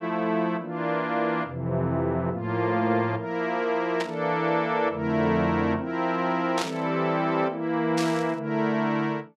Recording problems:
burst of static; at 4 s, at 6.5 s and at 8 s; peak -1 dB vs average level

